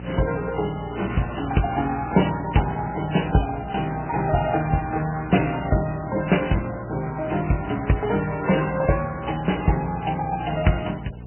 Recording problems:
lossy codec; MP3, then Vorbis, log-spectral distance 8 dB, nothing above 3 kHz
hum; 60 Hz, harmonics up to 720 Hz, SNR 14 dB
background hiss; SNR 25 dB

